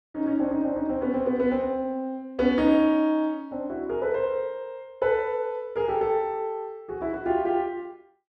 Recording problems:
none

